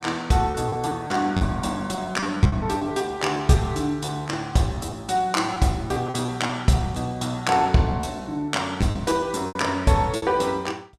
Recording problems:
packet loss; 11% of the sound replaced, filled with repeated pitch periods

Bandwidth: 14 kHz